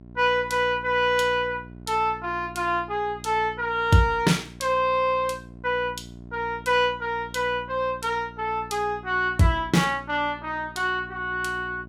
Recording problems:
hum; 60 Hz, harmonics up to 780 Hz, SNR 19 dB

